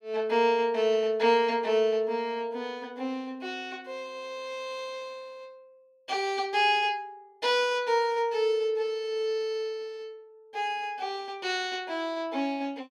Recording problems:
none

